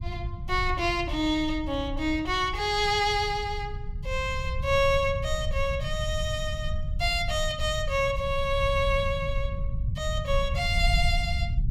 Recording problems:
low-frequency rumble; below 94 Hz, SNR 6 dB

